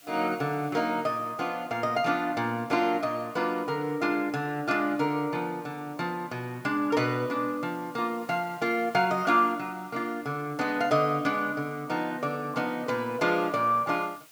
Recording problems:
hiss; slope +1 dB per octave, SNR 26 dB

